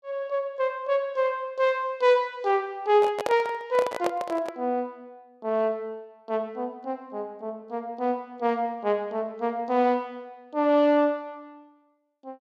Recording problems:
microphone handling noise; from 3 to 4.5 s; peak +2 dB vs average level

